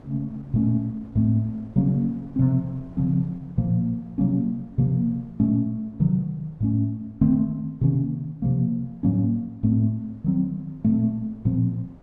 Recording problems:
wind noise; below 320 Hz, SNR 26 dB

